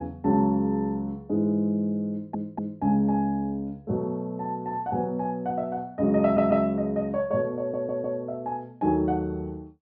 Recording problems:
treble missing; nothing above 5.5 kHz
audio stuttering; at 2 s, at 6 s and at 7.5 s

